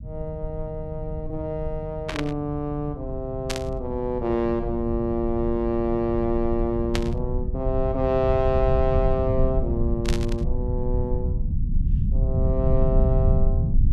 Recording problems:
rumble; below 100 Hz, SNR 1 dB
static burst; 4 times, first at 2 s; peak +3 dB vs average level

